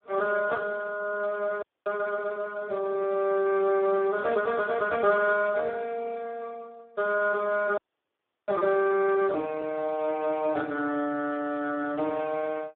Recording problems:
phone line; 240 Hz to 2.1 kHz, Speex
frozen audio; at 1.5 s and at 8 s for 0.5 s

